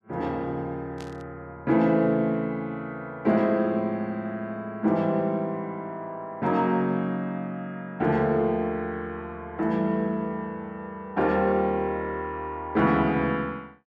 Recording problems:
burst of static; at 1 s; peak -14 dB vs average level

